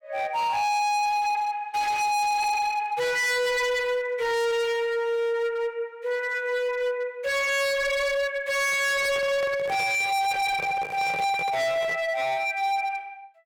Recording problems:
distorted audio; hard clipping, signal-to-distortion ratio 6 dB
handling noise; from 8.5 to 12 s; peak -7 dB vs average level

